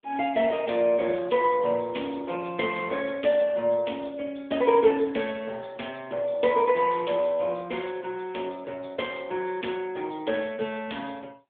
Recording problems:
telephone audio; 280 Hz to 3.5 kHz, AMR-NB

